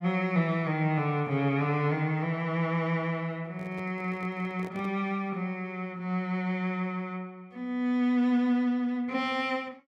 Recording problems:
microphone handling noise; from 3.5 to 5 s; peak -12 dB vs average level

